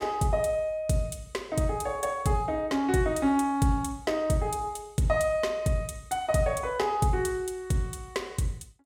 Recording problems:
none

